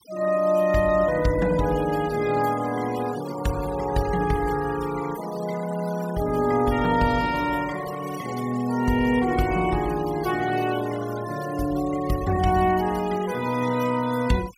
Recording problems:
denoising artefacts; signal-to-artefact ratio 15 dB

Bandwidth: 16.5 kHz